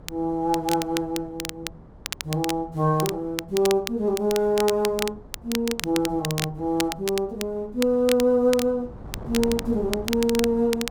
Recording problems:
wind noise; below 340 Hz, SNR 19 dB
crackle; vinyl, SNR 9 dB

